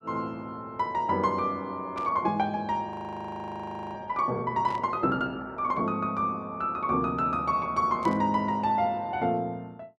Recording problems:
burst of static; at 2 s, at 4.5 s and at 8 s; peak -12 dB vs average level
audio freezing; at 3 s for 1 s

